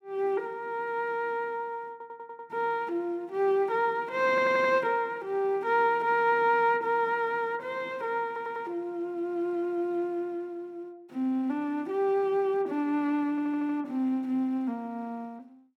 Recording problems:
audio stuttering; 4 times, first at 2 s

